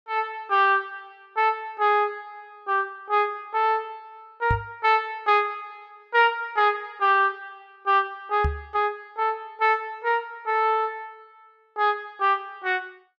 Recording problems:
microphone thump; at 4.5 s and at 8.5 s; peak +1 dB vs average level

